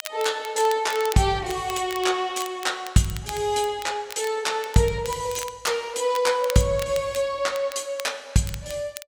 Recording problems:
crackle; vinyl, SNR 16 dB

